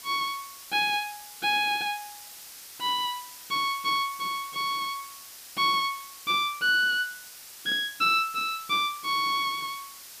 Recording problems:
background hiss; slope +2 dB per octave, SNR 15 dB

